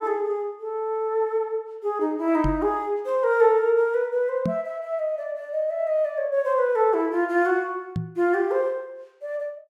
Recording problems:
knock on the microphone; at 2.5 s, at 4.5 s and at 8 s; peak +1 dB vs average level

